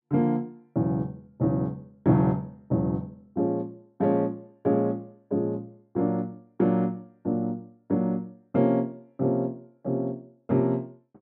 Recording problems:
none

